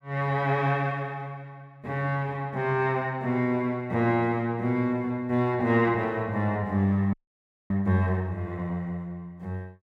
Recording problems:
audio freezing; at 7 s for 0.5 s

